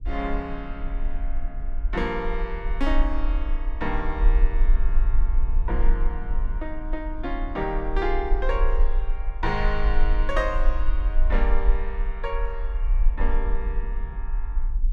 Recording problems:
rumble; below 40 Hz, strongest tone 22 Hz, SNR -3 dB
wind on the microphone; below 190 Hz, SNR 13 dB

